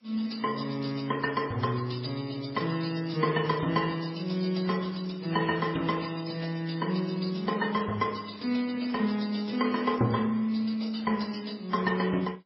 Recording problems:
lossy codec; MP3, then AAC, log-spectral distance 6 dB, nothing above 5 kHz

